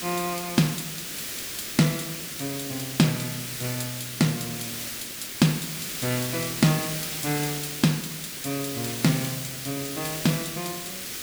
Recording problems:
background hiss; SNR 4 dB

